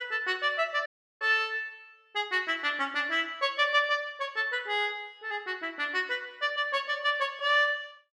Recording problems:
dropout; at 1 s

